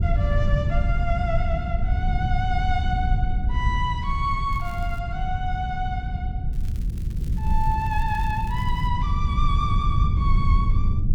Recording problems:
rumble; below 96 Hz, SNR -3 dB
crackle; at 4.5 s and from 6.5 to 9 s; loose cable, SNR 22 dB

